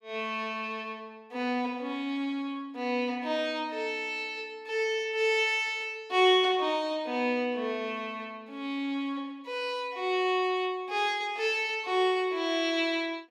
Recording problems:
none

